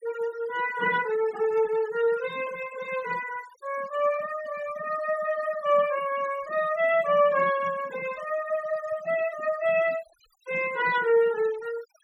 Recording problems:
denoising artefacts; signal-to-artefact ratio 18 dB

